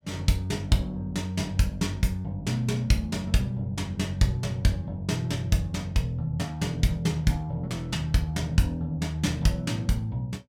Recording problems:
none

